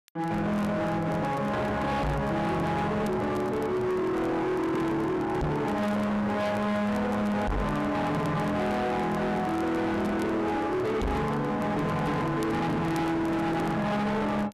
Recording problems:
distorted audio; hard clipping, uneven, signal-to-distortion ratio 6 dB
crackling; vinyl, SNR 27 dB
microphone thump; 4 times, first at 2 s; peak +4 dB vs average level

